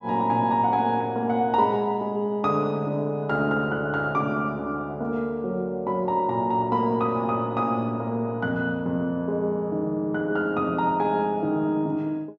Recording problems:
treble missing; nothing above 8 kHz

